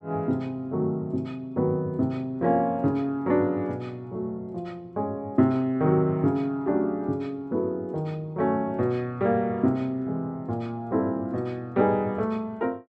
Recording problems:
none

